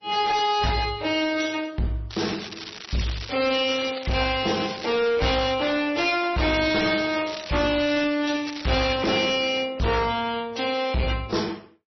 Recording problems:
lossy codec; AAC, then MP3, log-spectral distance 8 dB, nothing above 5.8 kHz
distortion; hard clipping, signal-to-distortion ratio 7 dB
crackle; 4 times, first at 2 s; loose cable, SNR 12 dB

